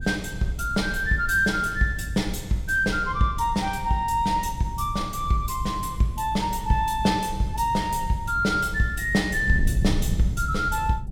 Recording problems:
wind noise; below 110 Hz, SNR 9 dB

